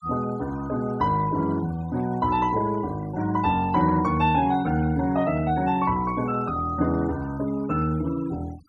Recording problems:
noise reduction artefacts; signal-to-artefact ratio 20 dB

